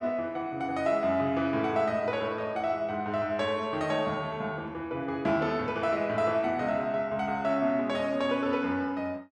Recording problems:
none

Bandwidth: 12 kHz